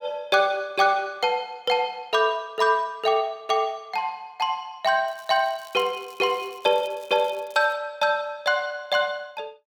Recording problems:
crackling; from 5 to 8 s; loose cable, SNR 26 dB

